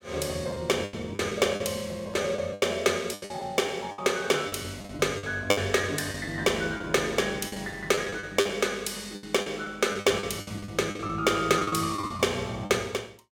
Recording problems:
packet loss; 13% of the sound replaced, filled with the last packet

